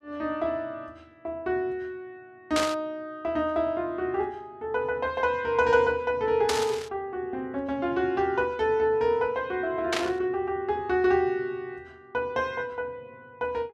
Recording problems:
static burst; at 2.5 s, at 6.5 s and at 10 s; peak +4 dB vs average level

